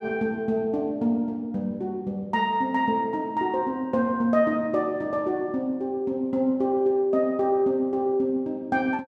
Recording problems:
none

